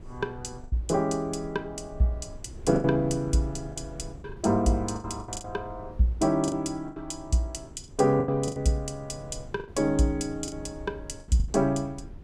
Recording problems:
wind noise; below 140 Hz, SNR 17 dB
lost packets; 9% of the sound replaced, filled with the last packet

